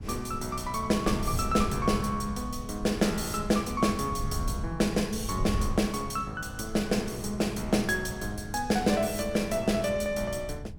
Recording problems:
wind noise; below 110 Hz, SNR 10 dB

